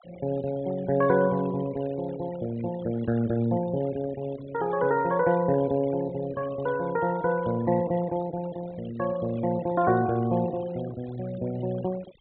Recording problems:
low-pass filter; nothing above 4 kHz
denoising artefacts; signal-to-artefact ratio 20 dB

